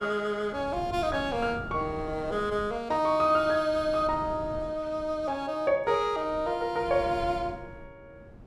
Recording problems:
wind noise; below 300 Hz, SNR 16 dB

